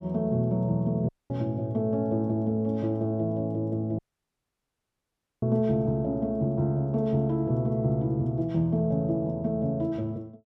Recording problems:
audio cutting out; at 1 s and at 4 s for 1.5 s

